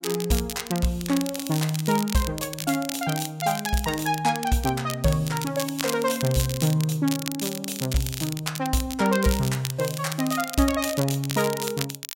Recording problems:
crackling; vinyl, SNR 8 dB

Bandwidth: 16 kHz